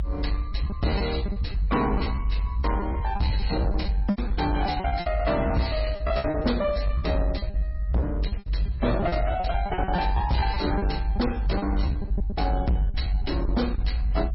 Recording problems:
lossy compression; MP3, log-spectral distance 3 dB, nothing above 5.3 kHz
distortion; soft clipping, signal-to-distortion ratio 11 dB
low-frequency rumble; below 66 Hz, strongest tone 48 Hz, SNR 1 dB
lost packets; 16% of the sound replaced, filled with repeated pitch periods

